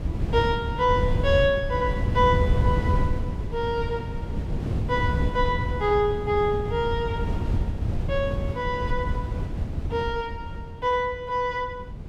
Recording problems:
wind noise; below 150 Hz, SNR 2 dB

